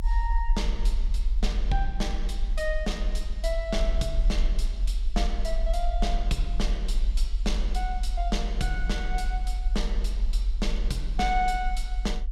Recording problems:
rumble; below 44 Hz, strongest tone 28 Hz, SNR -3 dB

